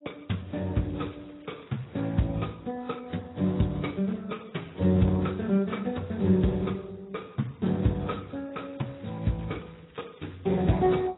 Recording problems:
codec artefacts; Speex, then AAC, log-spectral distance 6 dB, nothing above 3.8 kHz
crackling; from 1 to 2.5 s and from 8.5 to 10 s; loose cable, SNR 28 dB

